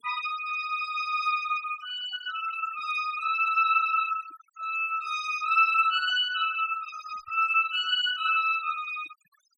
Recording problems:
noise reduction artefacts; signal-to-artefact ratio 16 dB

